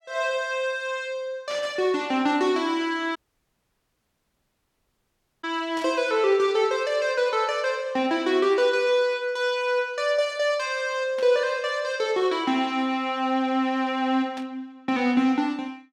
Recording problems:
burst of static; 4 times, first at 1.5 s; peak -11 dB vs average level
dropout; at 3 s for 2.5 s

